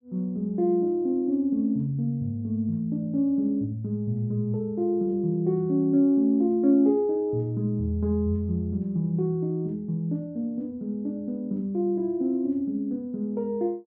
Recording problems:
none

